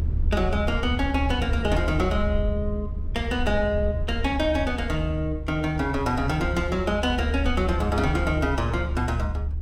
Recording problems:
low-frequency rumble; below 76 Hz, SNR 3 dB

